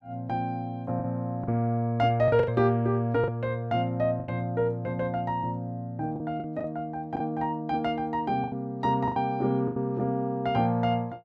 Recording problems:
lost packets; 6% of the sound replaced, filled with the last packet

